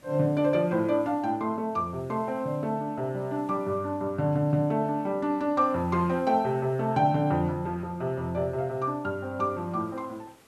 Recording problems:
background hiss; slope -4 dB per octave, SNR 30 dB

